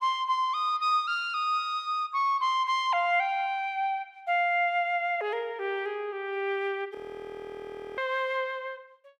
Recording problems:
audio freezing; at 7 s for 1 s

